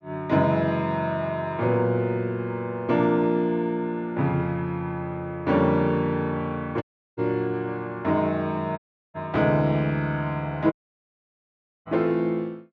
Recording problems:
dropout; at 7 s, at 9 s and at 11 s for 1 s

